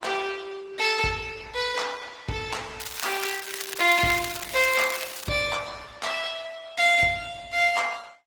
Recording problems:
lossy codec; Opus, then Opus, log-spectral distance 6 dB
crackle; from 3 to 5.5 s; loose cable, SNR 11 dB

